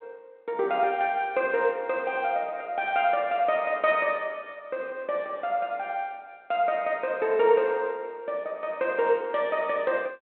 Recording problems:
phone line; 190 Hz to 3.7 kHz, G.726

